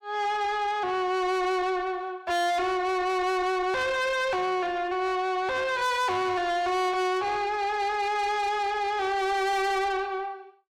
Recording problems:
distortion; soft clipping, signal-to-distortion ratio 7 dB

